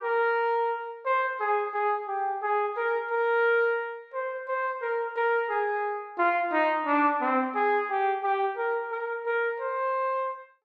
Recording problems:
none

